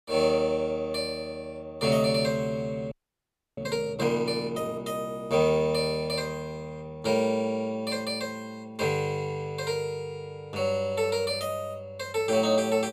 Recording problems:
frozen audio; at 3 s for 0.5 s

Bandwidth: 14.5 kHz